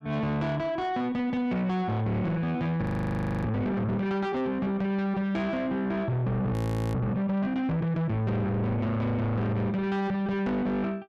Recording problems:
distorted audio; soft clipping, signal-to-distortion ratio 7 dB
frozen audio; at 3 s for 0.5 s and at 6.5 s

